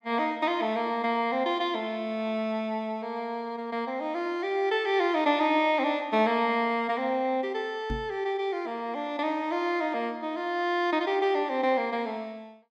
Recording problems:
microphone thump; at 8 s; peak -2 dB vs average level

